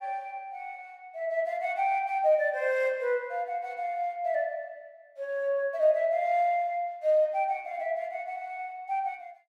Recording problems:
none

